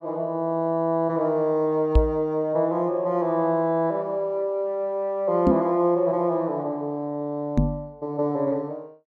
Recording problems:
knock on the microphone; at 2 s, at 5.5 s and at 7.5 s; peak +9 dB vs average level

